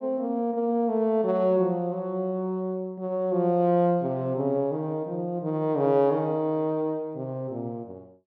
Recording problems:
none

